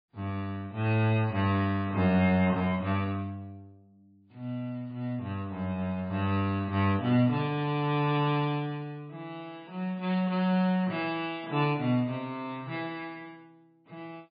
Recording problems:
codec artefacts; MP3, log-spectral distance 2 dB, nothing above 4.6 kHz

